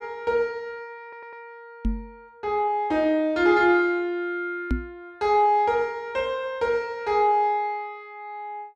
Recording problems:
stutter; at 1 s
microphone thump; at 2 s and at 4.5 s; peak +2 dB vs average level

